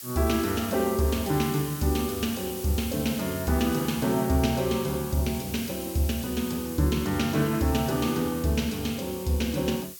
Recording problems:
hiss; slope +4 dB per octave, SNR 11 dB

